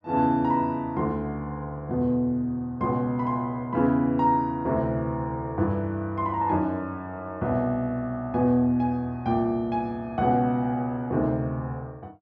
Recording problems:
none

